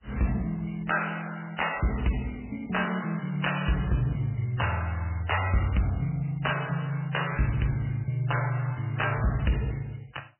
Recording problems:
lossy codec; MP3, log-spectral distance 10 dB, nothing above 3 kHz
distorted audio; soft clipping, signal-to-distortion ratio 11 dB

